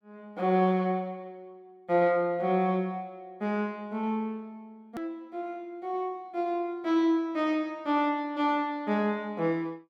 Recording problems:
hard cut with a click; at 5 s

